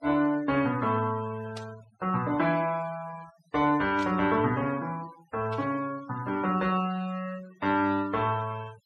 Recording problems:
noise reduction artefacts; signal-to-artefact ratio 20 dB
static burst; at 1.5 s, at 4 s and at 5.5 s; peak -10 dB vs average level

